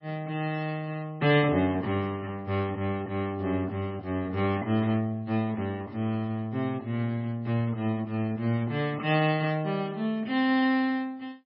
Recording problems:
lossy compression; MP3, log-spectral distance 2 dB

